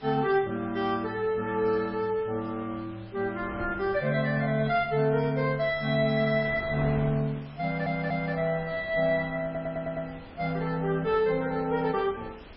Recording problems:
lossy codec; MP3, log-spectral distance 3 dB, nothing above 5.3 kHz
background hiss; SNR 26 dB
wind on the microphone; below 720 Hz, SNR 19 dB
stutter; at 7.5 s and at 9.5 s

